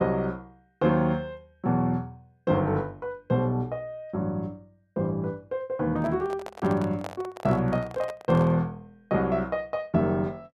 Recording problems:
microphone handling noise; from 6 to 8.5 s; peak -5 dB vs average level

